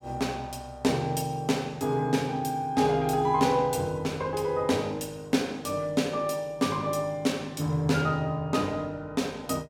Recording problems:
none

